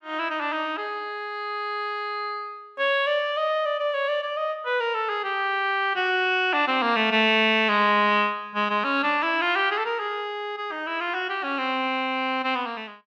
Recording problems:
none

